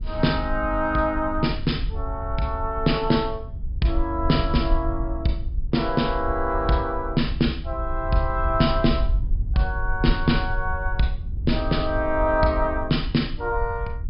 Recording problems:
treble cut off; nothing above 5.5 kHz
wind noise; below 66 Hz, SNR 6 dB

